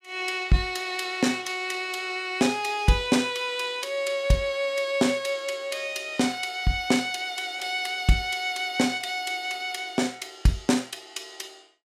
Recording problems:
none

